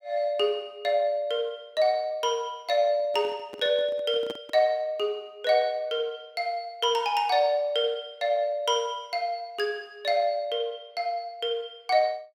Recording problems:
handling noise; from 3 to 4.5 s; peak -8 dB vs average level

